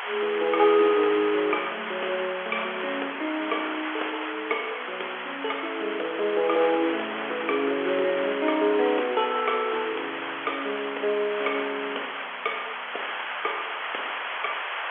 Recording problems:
phone line; 300 Hz to 3.4 kHz, G.711
hiss; SNR 5 dB

